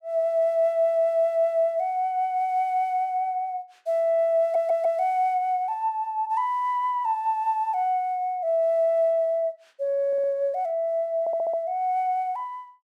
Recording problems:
audio stuttering; at 4.5 s, at 10 s and at 11 s

